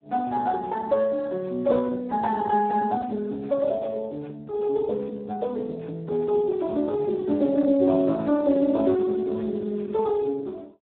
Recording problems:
telephone audio; 170 Hz to 2.5 kHz, Speex

